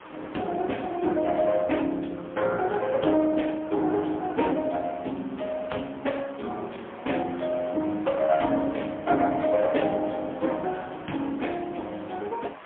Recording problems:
telephone audio; 190 Hz to 3.3 kHz, AMR-NB, then MP3
background hiss; SNR 18 dB

